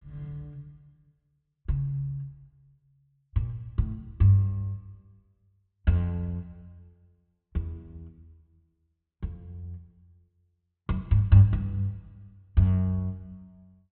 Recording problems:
low-pass filter; nothing above 4 kHz

